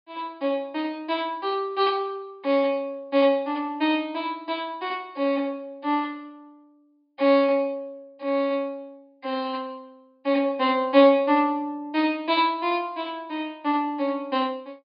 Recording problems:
treble missing; nothing above 5.1 kHz

